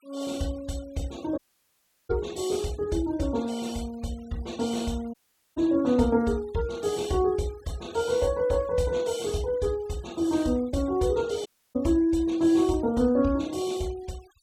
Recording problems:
noise reduction artefacts; signal-to-artefact ratio 23 dB
audio cutting out; at 1.5 s for 0.5 s, at 5 s and at 11 s

